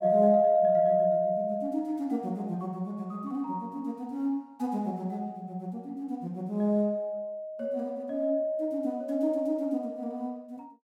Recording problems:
none

